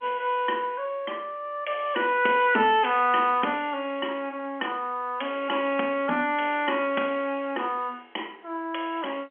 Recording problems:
phone line; 220 Hz to 3.3 kHz, G.711

